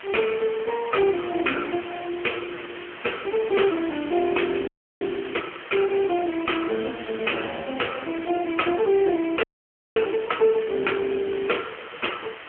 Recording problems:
phone line; 240 Hz to 2.4 kHz, AMR-NB
distortion; hard clipping, uneven, signal-to-distortion ratio 6 dB
hiss; SNR 14 dB
audio freezing; at 4.5 s and at 9.5 s for 0.5 s

